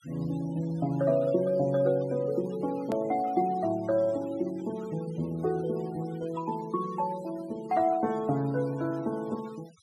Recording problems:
noise reduction artefacts; signal-to-artefact ratio 22 dB
hard cut with a click; at 3 s

